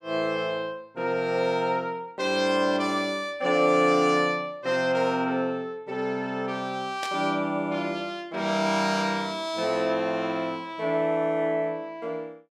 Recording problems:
burst of static; at 7 s; peak -4 dB vs average level

